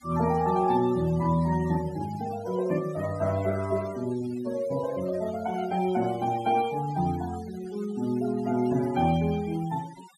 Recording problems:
noise reduction artefacts; signal-to-artefact ratio 19 dB

